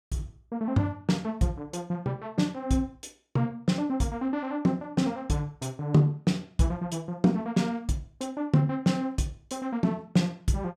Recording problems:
none

